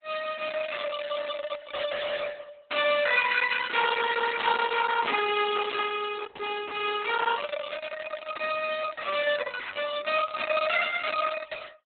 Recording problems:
codec artefacts; Opus, log-spectral distance 6 dB, nothing above 4 kHz

